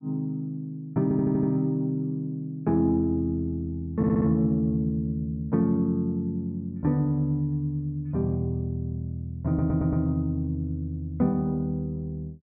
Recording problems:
stutter; at 1 s, at 4 s and at 9.5 s

